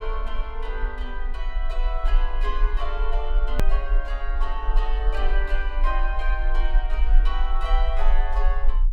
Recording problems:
rumble; below 38 Hz, strongest tone 20 Hz, SNR -6 dB
hard cut with a click; at 3.5 s

